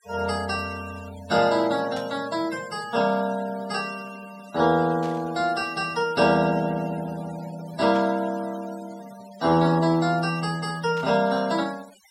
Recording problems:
denoising artefacts; signal-to-artefact ratio 18 dB
burst of static; 4 times, first at 2 s; peak -13 dB vs average level

